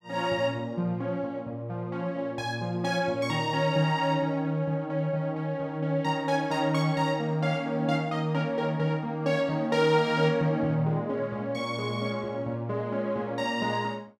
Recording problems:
none

